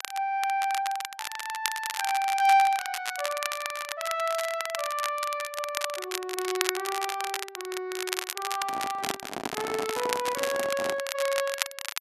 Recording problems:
crackling; vinyl, SNR 5 dB
microphone handling noise; from 8.5 to 11 s; peak +1 dB vs average level

